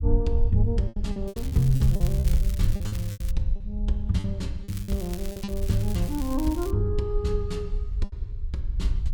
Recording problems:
rumble; below 66 Hz, SNR 2 dB
packet loss; 10% of the sound replaced, filled with repeated pitch periods
crackling; from 1.5 to 3.5 s and from 4.5 to 6.5 s; loose cable, SNR 14 dB

